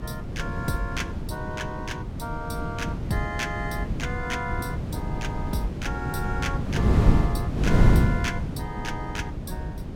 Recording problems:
electrical hum; 50 Hz, harmonics up to 300 Hz, SNR 16 dB
wind on the microphone; below 210 Hz, SNR -5 dB

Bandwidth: 17 kHz